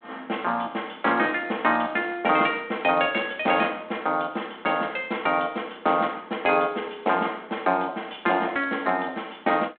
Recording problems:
phone line; 190 Hz to 3.6 kHz, G.726

